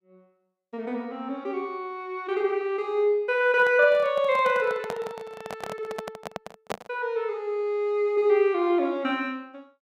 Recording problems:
microphone handling noise; from 3.5 to 7 s; peak -2 dB vs average level

